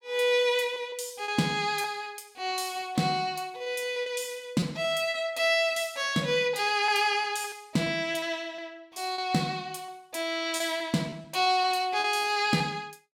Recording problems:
lost packets; 7% of the sound replaced, filled with repeated pitch periods

